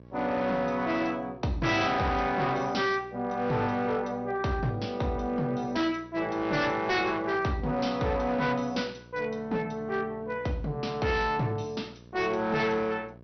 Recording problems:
lossy compression; MP2, log-spectral distance 3 dB, nothing above 6 kHz
distortion; hard clipping, signal-to-distortion ratio 10 dB
hum; 60 Hz, harmonics up to 1.1 kHz, SNR 22 dB

